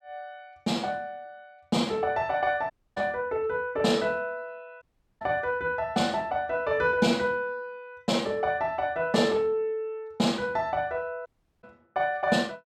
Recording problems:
dropout; at 2.5 s, at 5 s and at 11 s

